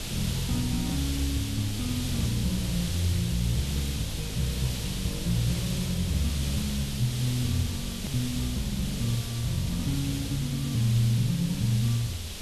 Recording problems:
background hiss; SNR 6 dB
low-frequency rumble; below 80 Hz, SNR 15 dB
hard cut with a click; at 8 s

